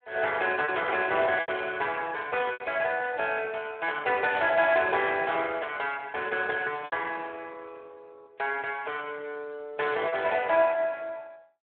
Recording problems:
phone line; 340 Hz to 3.6 kHz, Speex
lost packets; 3% of the sound replaced, filled with repeated pitch periods

